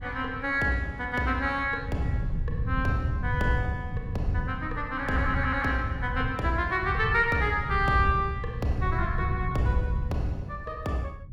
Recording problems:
wind noise; below 120 Hz, SNR 5 dB

